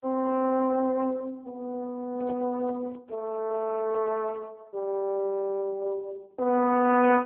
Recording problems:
telephone audio; 220 Hz to 3.2 kHz, AMR-NB
microphone handling noise; from 2 to 4.5 s; peak -11 dB vs average level

